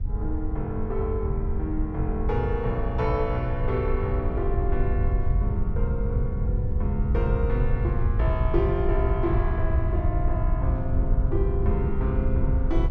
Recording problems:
wind on the microphone; below 86 Hz, SNR -3 dB

